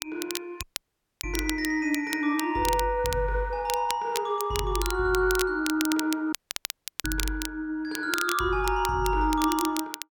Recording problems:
crackle; vinyl, SNR 8 dB
dropout; at 0.5 s for 0.5 s and at 6.5 s for 0.5 s

